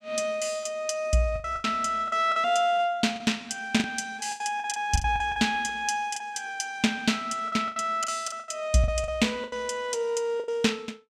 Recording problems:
packet loss; 11% of the sound replaced, filled with the last packet

